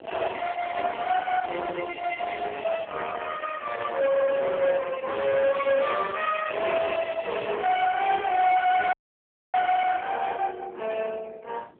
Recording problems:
telephone audio; 300 Hz to 3.5 kHz, AMR-NB
distorted audio; soft clipping, signal-to-distortion ratio 8 dB
wind noise; below 1.7 kHz, SNR 13 dB
dropout; at 9 s for 0.5 s

